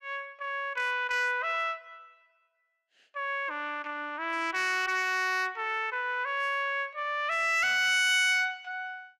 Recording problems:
distortion; hard clipping, signal-to-distortion ratio 11 dB

